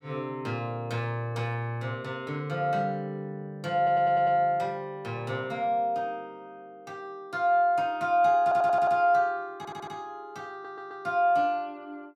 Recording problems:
stutter; 4 times, first at 4 s

